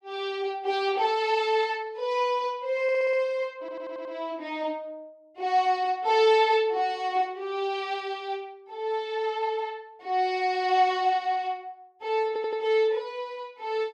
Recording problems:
audio stuttering; at 3 s, at 3.5 s and at 12 s

